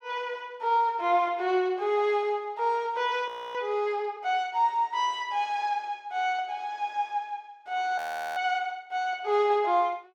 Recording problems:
audio freezing; at 3.5 s and at 8 s

